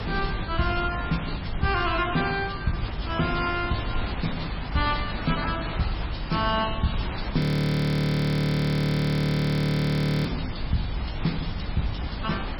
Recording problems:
lossy compression; MP3, log-spectral distance 7 dB, nothing above 18.3 kHz
hum; 50 Hz, harmonics up to 350 Hz, SNR 13 dB
background hiss; SNR 10 dB
rumble; below 94 Hz, SNR 10 dB
audio freezing; at 7.5 s for 3 s

